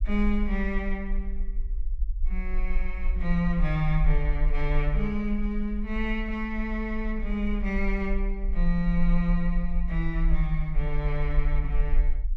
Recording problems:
low-frequency rumble; below 42 Hz, SNR 1 dB

